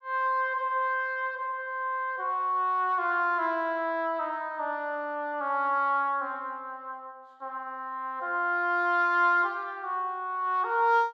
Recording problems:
none

